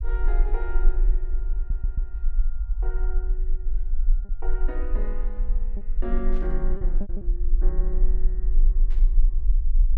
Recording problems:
low-frequency rumble; below 36 Hz, strongest tone 22 Hz, SNR -11 dB
lost packets; 2% of the sound replaced, filled with repeated pitch periods
stutter; at 1.5 s
burst of static; at 6.5 s and at 9 s; peak -11 dB vs average level

